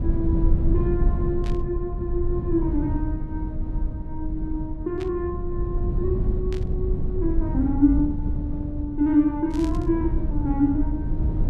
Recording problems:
low-frequency rumble; below 96 Hz, SNR 1 dB
burst of static; 4 times, first at 1.5 s; peak -10 dB vs average level

